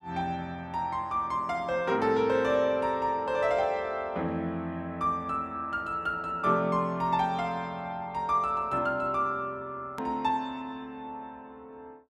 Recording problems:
click at an edit; at 10 s

